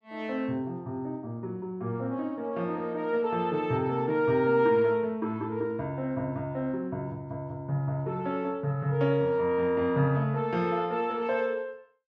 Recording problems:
none

